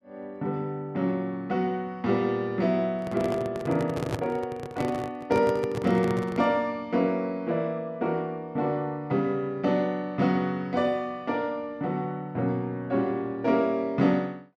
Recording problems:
microphone handling noise; from 3 to 6.5 s; peak +1 dB vs average level

